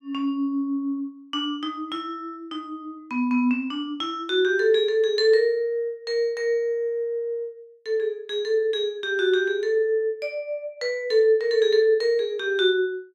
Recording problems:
none

